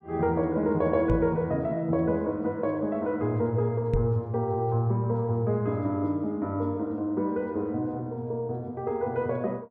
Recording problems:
microphone bump; at 1 s and at 4 s; peak +4 dB vs average level

